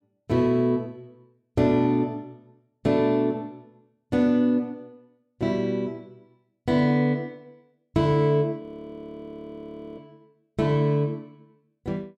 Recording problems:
frozen audio; at 8.5 s for 1.5 s

